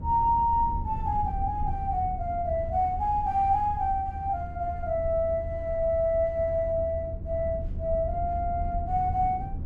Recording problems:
rumble; below 92 Hz, SNR 8 dB

